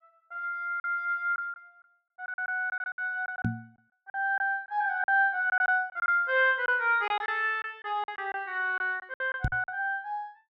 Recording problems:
lost packets; 11% of the sound replaced, filled with silence
microphone bump; at 3.5 s and at 9.5 s; peak +3 dB vs average level

